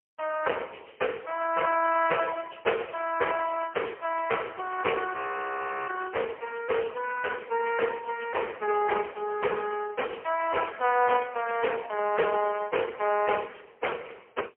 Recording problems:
phone line; 370 Hz to 3.1 kHz, AMR-NB, then MP3
audio freezing; at 5 s for 0.5 s

